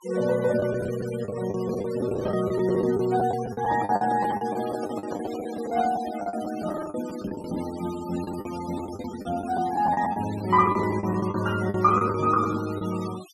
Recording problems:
noise reduction artefacts; signal-to-artefact ratio 15 dB
lost packets; 14% of the sound replaced, filled with the last packet
microphone handling noise; from 3.5 to 6 s; peak -5 dB vs average level

